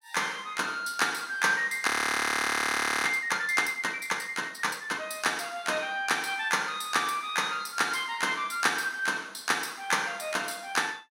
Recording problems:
frozen audio; at 2 s for 1 s

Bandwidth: 16 kHz